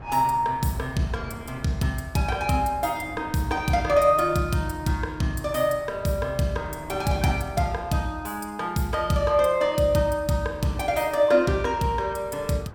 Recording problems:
wind noise; below 680 Hz, SNR 20 dB

